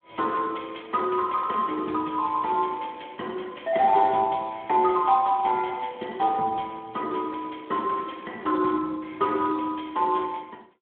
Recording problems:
telephone audio; 170 Hz to 3.2 kHz, Speex

